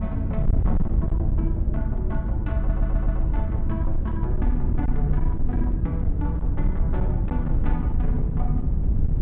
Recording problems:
low-pass filter; nothing above 4 kHz
distortion; hard clipping, signal-to-distortion ratio 12 dB
wind on the microphone; below 84 Hz, SNR -6 dB
stutter; at 2.5 s

